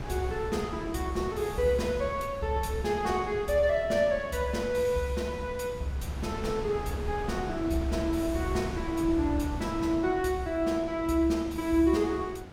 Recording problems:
wind on the microphone; below 370 Hz, SNR 11 dB

